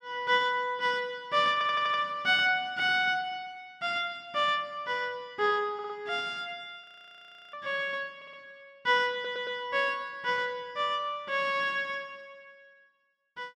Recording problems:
audio stuttering; 4 times, first at 1.5 s
audio freezing; at 7 s for 0.5 s

